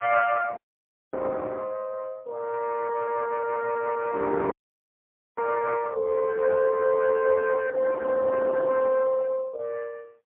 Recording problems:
telephone audio; 260 Hz to 2.1 kHz, AMR-NB, then MP3
audio cutting out; at 0.5 s for 0.5 s and at 4.5 s for 1 s

